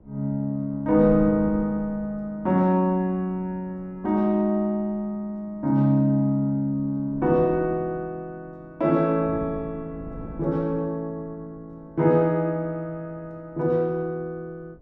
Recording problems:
wind on the microphone; below 280 Hz, SNR 19 dB

